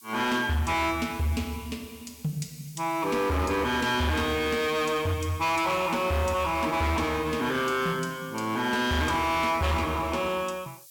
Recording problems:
distortion; hard clipping, signal-to-distortion ratio 10 dB
hiss; SNR 21 dB

